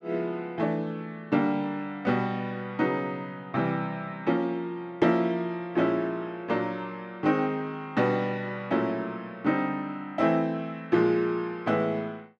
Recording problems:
none

